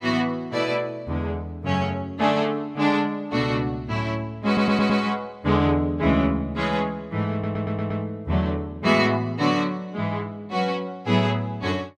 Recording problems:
audio stuttering; at 4.5 s and at 7.5 s

